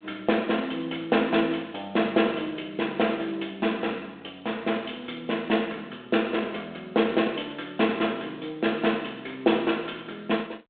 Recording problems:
telephone audio; 280 Hz to 3.5 kHz, G.726

